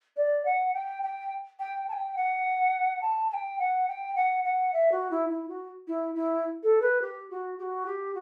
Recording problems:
none

